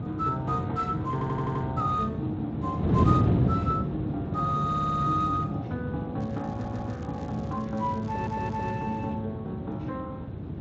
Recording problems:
codec artefacts; Speex, log-spectral distance 2 dB
wind noise; below 280 Hz, SNR 1 dB
stutter; 4 times, first at 1 s
crackling; from 6 to 8.5 s; loose cable, SNR 27 dB

